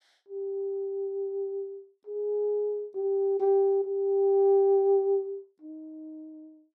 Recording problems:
none

